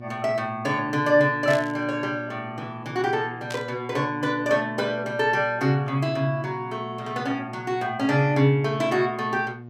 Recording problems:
hum; 60 Hz, harmonics up to 720 Hz, SNR 15 dB
burst of static; at 1.5 s and at 3.5 s; peak -7 dB vs average level

